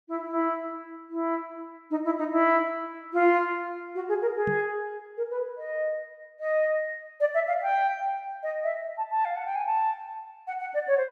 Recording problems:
microphone bump; at 4.5 s; peak -2 dB vs average level

